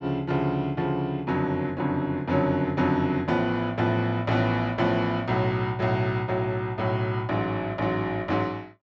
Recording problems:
treble cut off; nothing above 8 kHz

